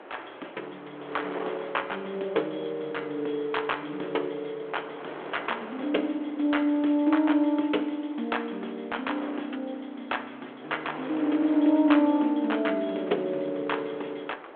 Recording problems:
telephone audio; 260 Hz to 3.5 kHz, G.726
wind on the microphone; below 1.3 kHz, SNR 15 dB

